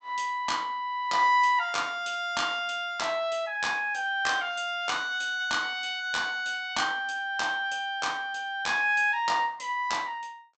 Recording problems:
low-pass filter; nothing above 8 kHz

